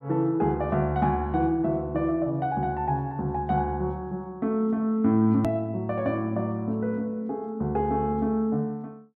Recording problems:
edit click; at 5.5 s

